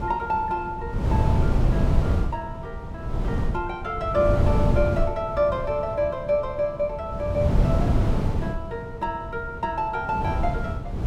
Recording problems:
wind on the microphone; below 170 Hz, SNR -1 dB

